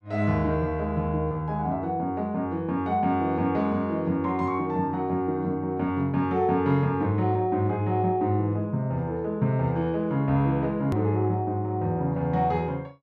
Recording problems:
edit click; at 11 s

